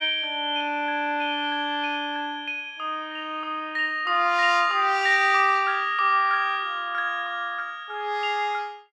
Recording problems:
none

